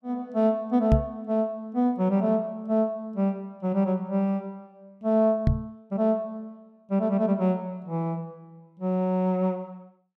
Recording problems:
knock on the microphone; at 1 s and at 5.5 s; peak +8 dB vs average level

